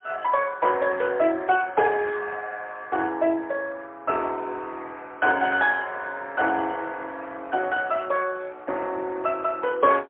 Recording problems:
telephone audio; 280 Hz to 3.7 kHz, AMR-NB, then MP3

